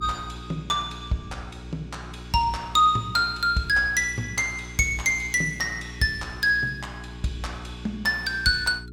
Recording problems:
hum; 60 Hz, harmonics up to 420 Hz, SNR 17 dB

